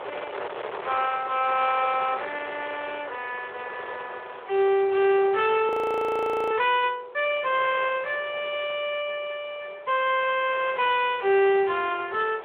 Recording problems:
phone line; 340 Hz to 3.5 kHz, Speex
distorted audio; hard clipping, uneven, signal-to-distortion ratio 13 dB
wind noise; below 1.5 kHz, SNR 15 dB
audio freezing; at 5.5 s for 1 s

